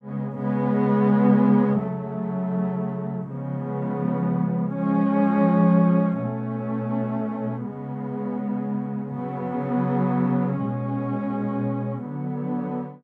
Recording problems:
none

